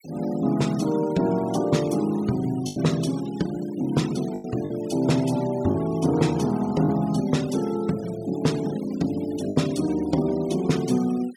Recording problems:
denoising artefacts; signal-to-artefact ratio 19 dB
packet loss; 3% of the sound replaced, filled with the last packet

